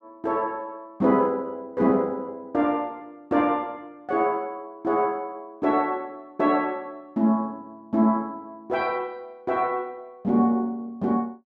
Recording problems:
none

